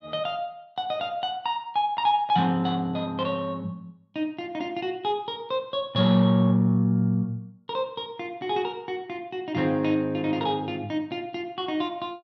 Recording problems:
none

